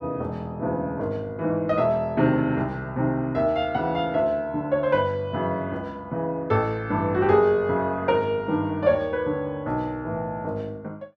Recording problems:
none

